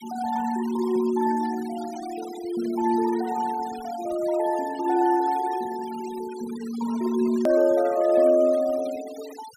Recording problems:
denoising artefacts; signal-to-artefact ratio 18 dB
hard cut with a click; at 7.5 s

